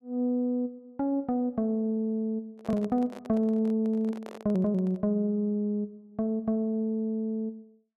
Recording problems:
microphone handling noise; from 2.5 to 5 s; peak -10 dB vs average level

